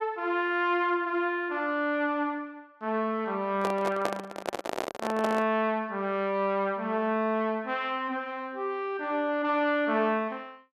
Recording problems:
microphone handling noise; from 3.5 to 5.5 s; peak +3 dB vs average level

